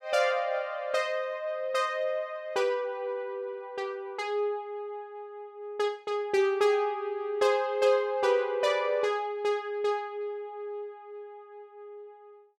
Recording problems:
none

